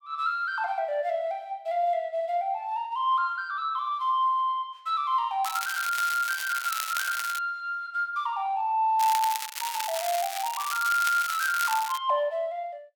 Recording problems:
crackle; from 5.5 to 7.5 s and from 9 to 12 s; loose cable, SNR 7 dB

